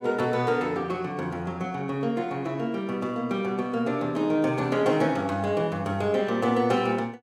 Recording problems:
none

